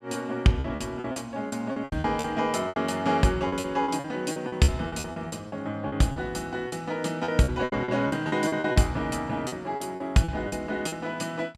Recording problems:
lost packets; 15% of the sound replaced, filled with repeated pitch periods

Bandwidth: 15 kHz